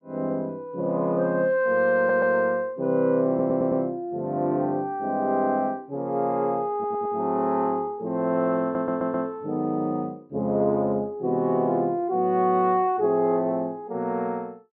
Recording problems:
low-pass filter; nothing above 8 kHz
stutter; 4 times, first at 2 s

